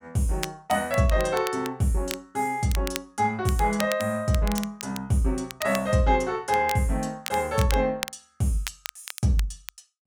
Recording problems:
crackling; vinyl, SNR 12 dB

